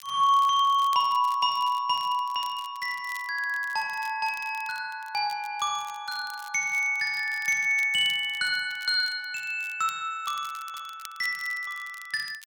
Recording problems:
crackle; vinyl, SNR 22 dB

